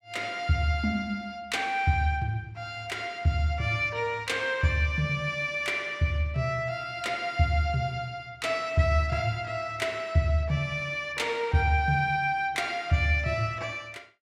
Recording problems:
none

